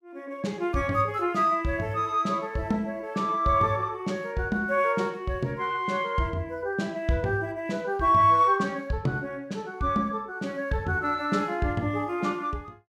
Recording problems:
none

